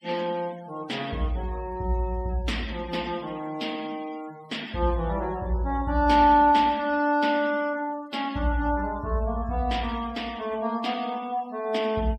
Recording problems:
noise reduction artefacts; signal-to-artefact ratio 21 dB

